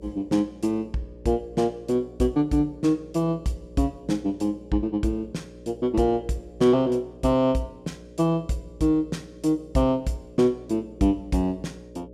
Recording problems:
mains hum; 60 Hz, harmonics up to 600 Hz, SNR 20 dB

